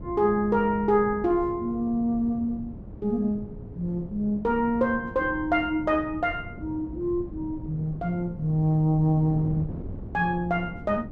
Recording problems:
wind on the microphone; below 230 Hz, SNR 14 dB

